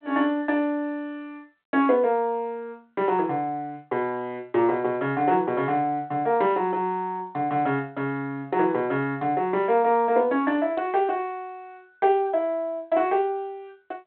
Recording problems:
phone line; 240 Hz to 3.8 kHz, G.726

